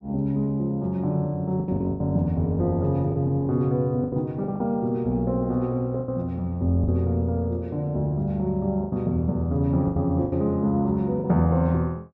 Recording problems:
lost packets; 7% of the sound replaced, filled with the last packet

